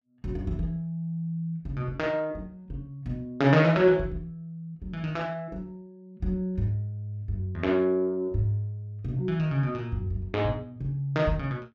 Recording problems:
none

